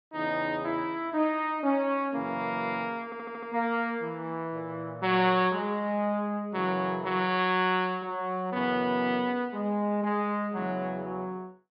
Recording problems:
treble missing; nothing above 5.1 kHz
stutter; at 3 s

